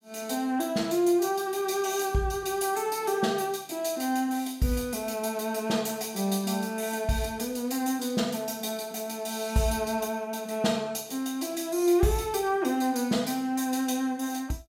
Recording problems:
none

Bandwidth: 16 kHz